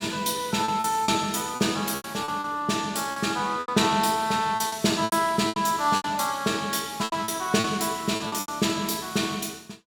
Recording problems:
lost packets; 11% of the sound replaced, filled with repeated pitch periods

